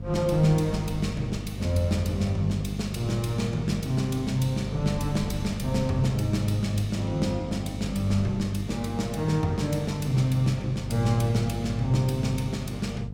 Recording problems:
electrical hum; 50 Hz, harmonics up to 500 Hz, SNR 7 dB
wind on the microphone; below 100 Hz, SNR 19 dB

